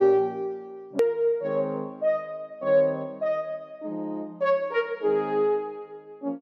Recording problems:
click at an edit; at 1 s

